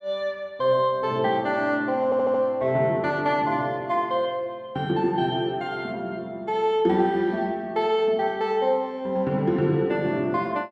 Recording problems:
audio stuttering; at 2 s

